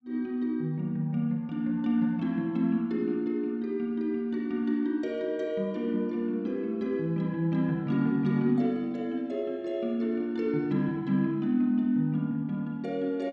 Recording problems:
none

